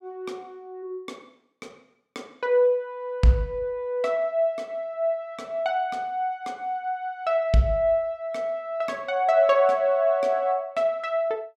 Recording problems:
none

